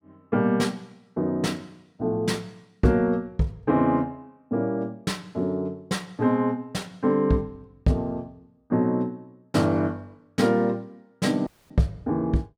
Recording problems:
audio cutting out; at 11 s

